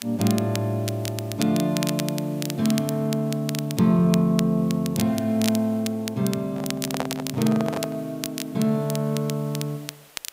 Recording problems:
background hiss; SNR 25 dB
crackling; vinyl, SNR 10 dB
handling noise; from 6.5 to 8 s; peak +1 dB vs average level

